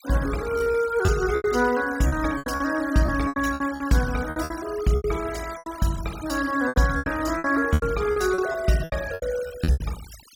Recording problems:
noise reduction artefacts; signal-to-artefact ratio 16 dB
packet loss; 15% of the sound replaced, filled with repeated pitch periods

